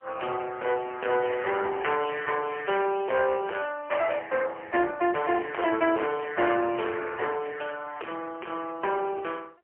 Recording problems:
phone line; 300 Hz to 3 kHz, AMR-NB, then MP3
distorted audio; soft clipping, signal-to-distortion ratio 9 dB

